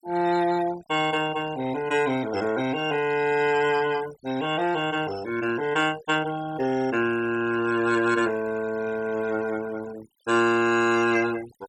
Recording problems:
noise reduction artefacts; signal-to-artefact ratio 16 dB

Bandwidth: 17 kHz